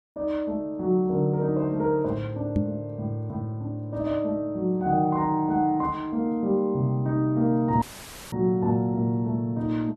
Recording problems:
microphone thump; at 2.5 s; peak +5 dB vs average level
audio cutting out; at 8 s for 0.5 s; filled with static

